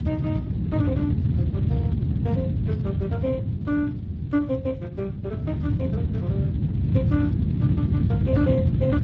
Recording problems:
lossy codec; Speex, log-spectral distance 2 dB
wind on the microphone; below 180 Hz, SNR -5 dB

